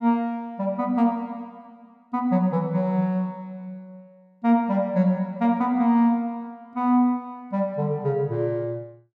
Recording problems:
none

